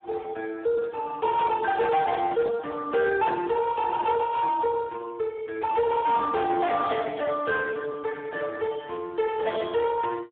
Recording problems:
telephone audio; 300 Hz to 2.8 kHz, Speex
distorted audio; soft clipping, signal-to-distortion ratio 11 dB
burst of static; at 9 s; peak -19 dB vs average level

